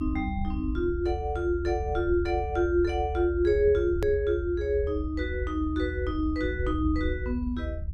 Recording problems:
rumble; below 78 Hz, SNR 6 dB
hard cut with a click; at 4 s

